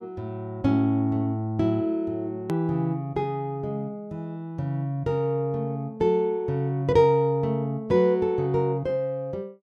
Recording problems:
edit click; at 2.5 s

